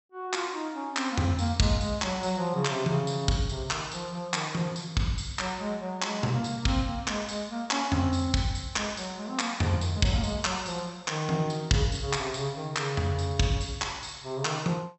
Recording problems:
treble missing; nothing above 7.9 kHz

